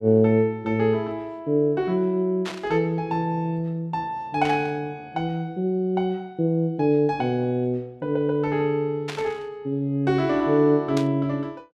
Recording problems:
burst of static; 4 times, first at 2.5 s; peak -5 dB vs average level

